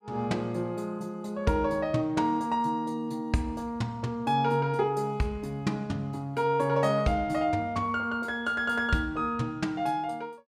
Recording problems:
none

